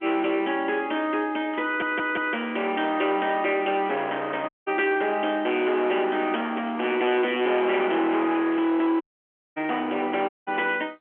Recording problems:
telephone audio; 280 Hz to 3.3 kHz, G.711
distorted audio; hard clipping, signal-to-distortion ratio 9 dB
static burst; at 1.5 s, at 6.5 s and at 8.5 s; peak -15 dB vs average level
audio stuttering; at 1.5 s
audio cutting out; at 4.5 s, at 9 s for 0.5 s and at 10 s

